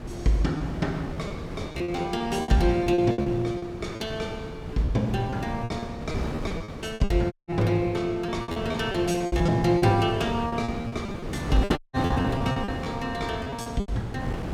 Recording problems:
wind noise; below 430 Hz, SNR 8 dB
packet loss; 14% of the sound replaced, filled with repeated pitch periods
dropout; at 7.5 s and at 12 s

